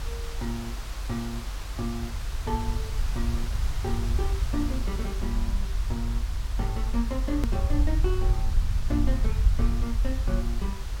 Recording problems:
hiss; slope -2 dB per octave, SNR 7 dB
rumble; below 64 Hz, SNR -4 dB
click at an edit; at 7.5 s

